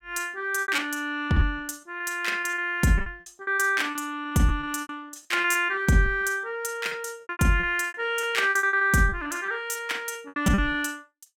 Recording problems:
lost packets; 18% of the sound replaced, filled with repeated pitch periods

